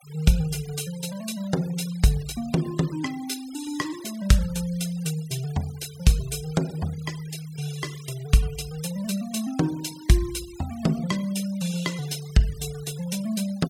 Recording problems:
noise reduction artefacts; signal-to-artefact ratio 17 dB

